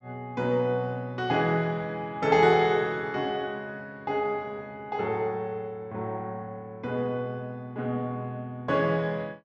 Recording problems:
treble missing; nothing above 7.8 kHz

